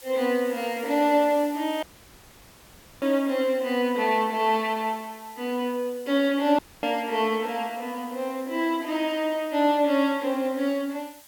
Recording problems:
background hiss; slope +1 dB per octave, SNR 22 dB
audio cutting out; at 2 s for 1 s and at 6.5 s

